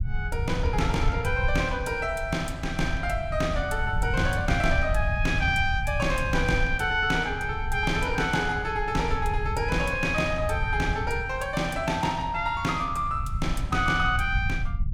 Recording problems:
rumble; below 98 Hz, SNR 5 dB

